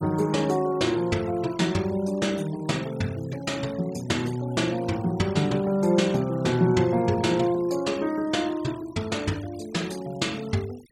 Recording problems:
denoising artefacts; signal-to-artefact ratio 20 dB

